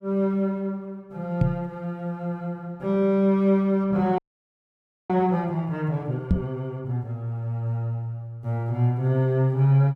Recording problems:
microphone thump; at 1.5 s and at 6.5 s; peak +7 dB vs average level
frozen audio; at 4 s for 1 s

